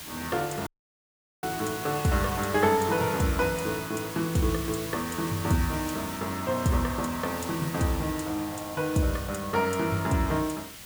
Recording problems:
hiss; slope 0 dB per octave, SNR 10 dB
dropout; at 0.5 s for 1 s

